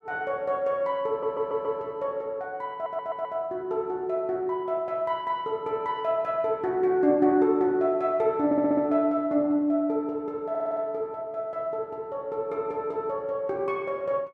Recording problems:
stutter; 4 times, first at 1 s

